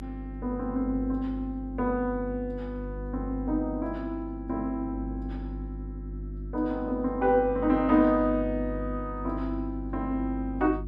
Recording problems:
electrical hum; 50 Hz, harmonics up to 350 Hz, SNR 9 dB

